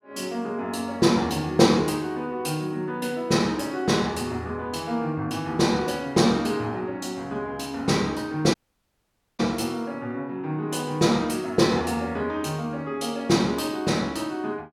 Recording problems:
dropout; at 8.5 s for 1 s

